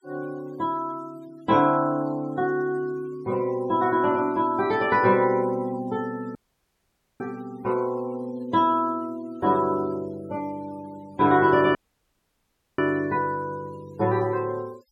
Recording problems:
noise reduction artefacts; signal-to-artefact ratio 24 dB
audio cutting out; at 6.5 s for 1 s and at 12 s for 1 s

